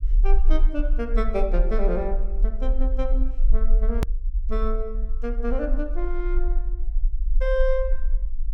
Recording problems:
rumble; below 40 Hz, strongest tone 22 Hz, SNR -4 dB
hard cut with a click; at 4 s

